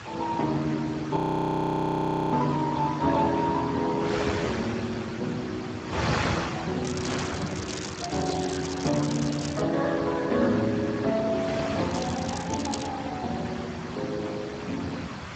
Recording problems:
lossy compression; Speex, log-spectral distance 7 dB
wind on the microphone; below 2.2 kHz, SNR 7 dB
audio freezing; at 1 s for 1 s
crackling; from 7 to 9.5 s and at 12 s; loose cable, SNR 10 dB

